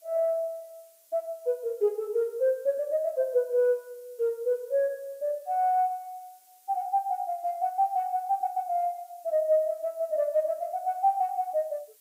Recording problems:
background hiss; SNR 29 dB

